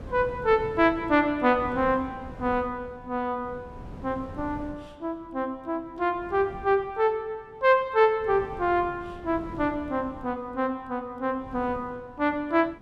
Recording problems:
wind noise; below 340 Hz, SNR 17 dB

